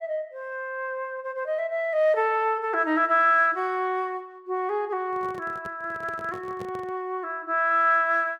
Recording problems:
handling noise; from 5 to 7 s; peak -10 dB vs average level

